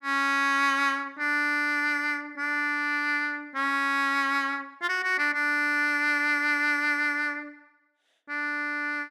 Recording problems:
none

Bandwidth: 15 kHz